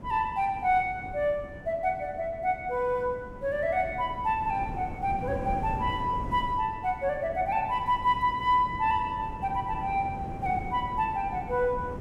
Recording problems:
wind on the microphone; below 320 Hz, SNR 12 dB

